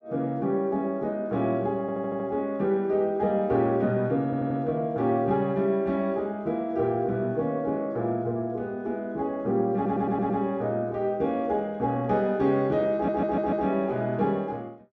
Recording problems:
stutter; 4 times, first at 2 s

